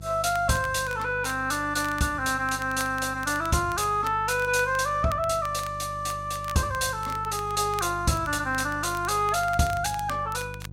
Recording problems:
electrical hum; 50 Hz, harmonics up to 500 Hz, SNR 15 dB
crackle; vinyl, SNR 19 dB

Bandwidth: 16 kHz